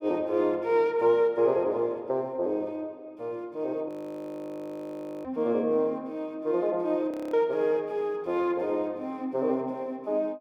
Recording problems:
frozen audio; at 4 s for 1.5 s and at 7 s
microphone thump; at 5 s; peak -25 dB vs average level

